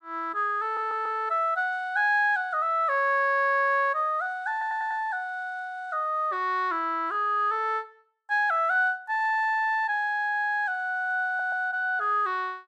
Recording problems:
stutter; at 0.5 s, at 4.5 s and at 11 s

